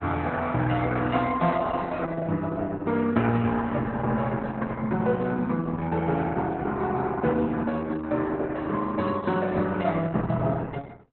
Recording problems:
lossy compression; Opus, log-spectral distance 3 dB, nothing above 4 kHz

